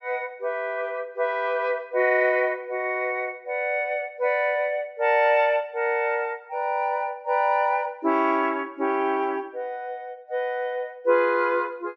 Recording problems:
low-pass filter; nothing above 8 kHz

